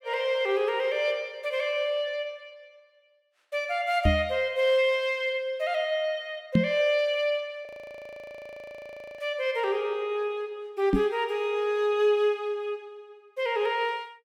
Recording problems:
microphone bump; at 4 s, at 6.5 s and at 11 s; peak +8 dB vs average level
frozen audio; at 7.5 s for 1.5 s

